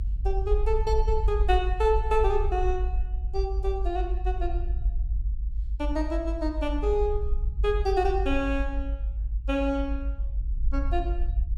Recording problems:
low-frequency rumble; below 54 Hz, SNR 1 dB

